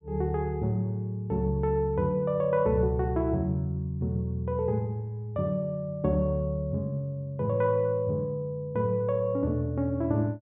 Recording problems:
treble missing; nothing above 4 kHz

